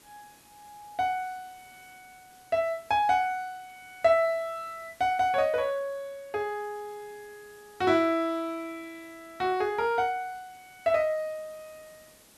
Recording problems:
hiss; slope -2 dB per octave, SNR 27 dB

